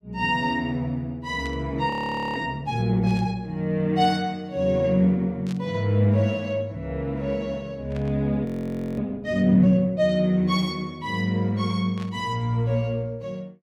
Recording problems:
static burst; 5 times, first at 1.5 s; peak -14 dB vs average level
frozen audio; at 2 s and at 8.5 s for 0.5 s

